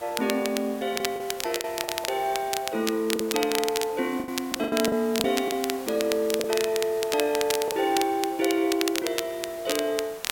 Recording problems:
hiss; slope -3 dB per octave, SNR 16 dB
crackling; vinyl, SNR 6 dB
lost packets; 7% of the sound replaced, filled with the last packet

